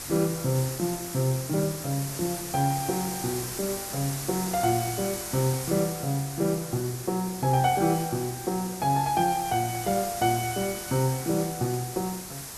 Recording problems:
hiss; SNR 7 dB

